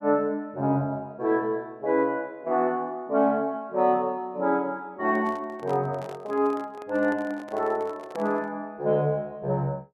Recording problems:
microphone handling noise; from 5 to 8.5 s; peak -8 dB vs average level

